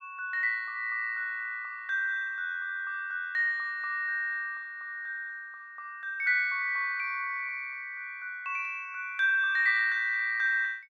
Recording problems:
none

